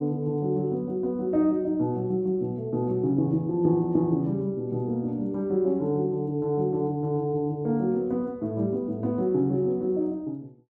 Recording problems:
none

